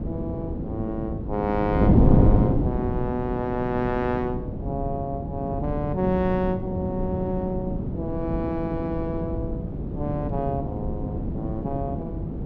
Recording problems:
wind on the microphone; below 270 Hz, SNR -2 dB

